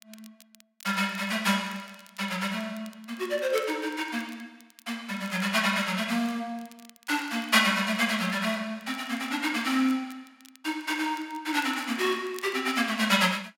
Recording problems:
crackling; vinyl, SNR 25 dB

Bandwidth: 16.5 kHz